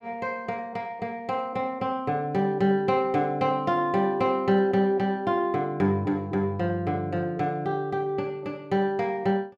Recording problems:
none

